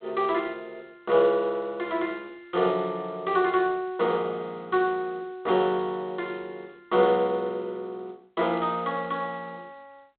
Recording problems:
phone line; 220 Hz to 3.8 kHz, G.726

